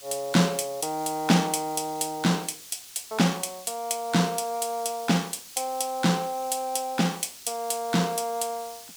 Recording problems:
hiss; SNR 16 dB

